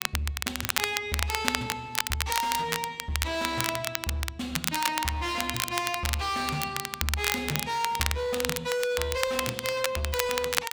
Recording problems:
distortion; hard clipping, signal-to-distortion ratio 7 dB
crackle; vinyl, SNR 1 dB

